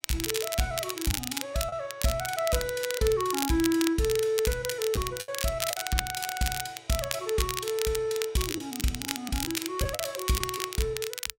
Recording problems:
crackle; vinyl, SNR 4 dB
packet loss; 4% of the sound replaced, filled with the last packet

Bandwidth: 16 kHz